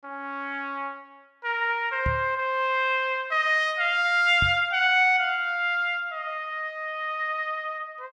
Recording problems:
microphone thump; at 2 s and at 4.5 s; peak -2 dB vs average level

